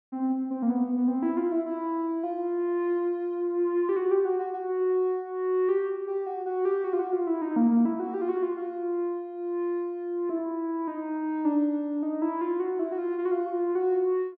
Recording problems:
none

